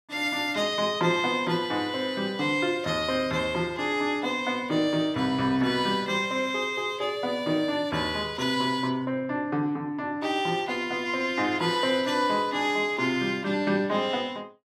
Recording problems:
none

